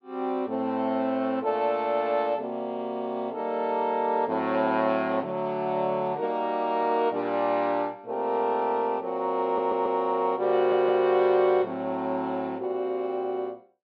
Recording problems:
audio stuttering; at 9.5 s and at 11 s

